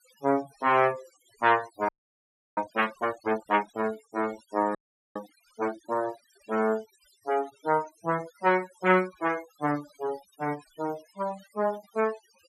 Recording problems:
noise reduction artefacts; signal-to-artefact ratio 20 dB
frozen audio; at 2 s for 0.5 s and at 5 s

